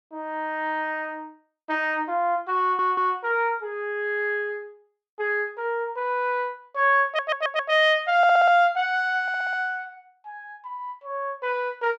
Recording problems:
audio stuttering; 4 times, first at 2.5 s

